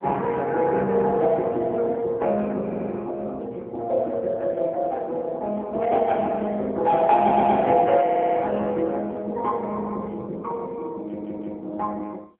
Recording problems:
phone line; 240 Hz to 3.4 kHz, AMR-NB
audio stuttering; 4 times, first at 2.5 s

